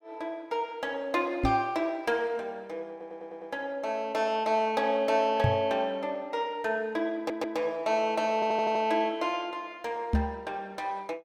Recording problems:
microphone bump; at 1.5 s, at 5.5 s and at 10 s; peak +7 dB vs average level
audio stuttering; at 3 s, at 7 s and at 8.5 s

